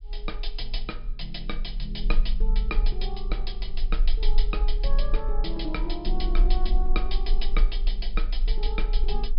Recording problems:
low-pass filter; nothing above 5.5 kHz
rumble; below 36 Hz, strongest tone 26 Hz, SNR -6 dB

